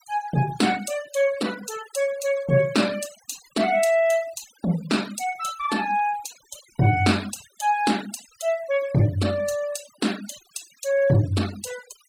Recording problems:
noise reduction artefacts; signal-to-artefact ratio 17 dB

